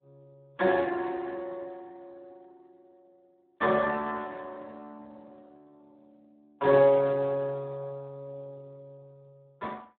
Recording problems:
telephone audio; 170 Hz to 2.6 kHz, Speex

